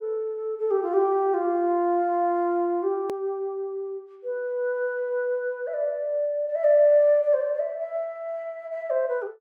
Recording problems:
click at an edit; at 3 s

